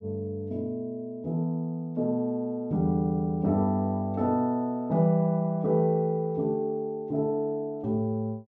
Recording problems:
none

